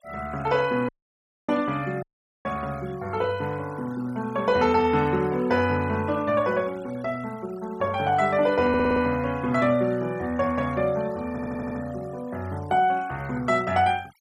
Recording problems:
noise reduction artefacts; signal-to-artefact ratio 22 dB
audio cutting out; at 1 s for 0.5 s and at 2 s
stutter; at 8.5 s and at 11 s

